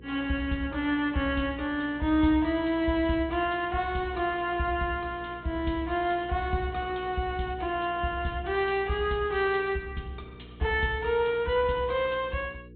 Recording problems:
treble cut off; nothing above 4 kHz
hum; 60 Hz, harmonics up to 480 Hz, SNR 21 dB

